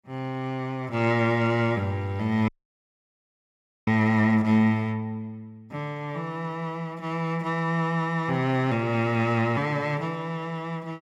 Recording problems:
audio cutting out; at 2.5 s for 1.5 s

